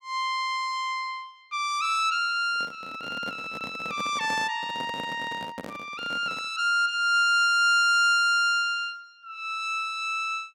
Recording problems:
microphone handling noise; from 2.5 to 6.5 s; peak -8 dB vs average level

